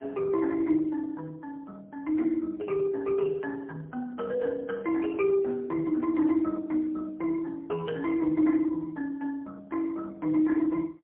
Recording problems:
telephone audio; 190 Hz to 2.7 kHz, AMR-NB, then MP3

